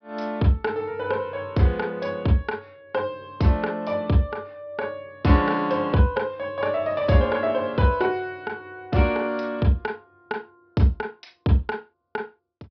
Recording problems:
treble missing; nothing above 5.5 kHz

